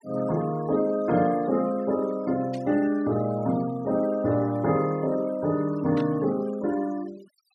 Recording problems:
noise reduction artefacts; signal-to-artefact ratio 22 dB
static burst; at 2.5 s and at 6 s; peak -13 dB vs average level

